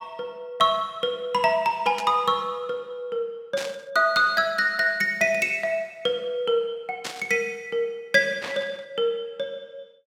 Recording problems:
static burst; 4 times, first at 2 s; peak -3 dB vs average level

